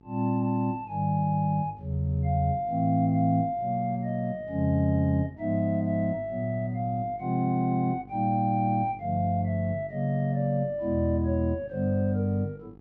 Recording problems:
mains hum; 50 Hz, harmonics up to 900 Hz, SNR 24 dB

